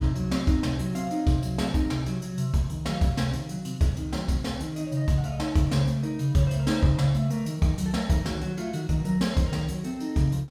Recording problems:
none

